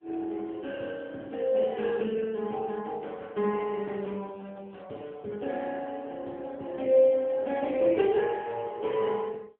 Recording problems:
phone line; 240 Hz to 3.5 kHz, AMR-NB

